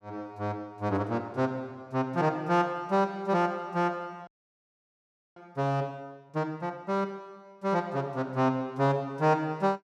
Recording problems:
frozen audio; at 4.5 s for 1 s

